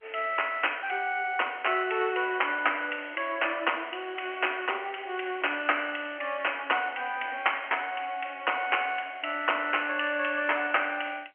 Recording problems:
telephone audio; 240 Hz to 3.1 kHz, G.711

